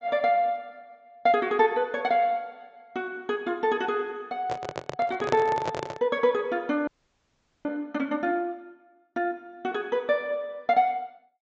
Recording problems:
treble missing; nothing above 8 kHz
handling noise; from 4.5 to 6 s; peak +2 dB vs average level
audio freezing; at 7 s for 1 s

